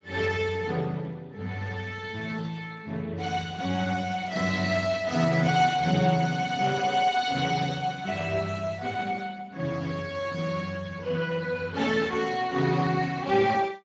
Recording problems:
codec artefacts; Speex, log-spectral distance 5 dB

